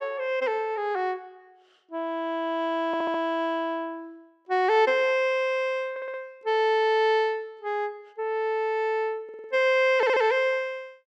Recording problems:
audio stuttering; 4 times, first at 3 s

